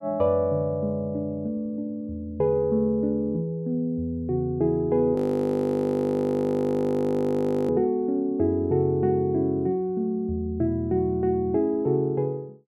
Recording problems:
audio freezing; at 5 s for 2.5 s

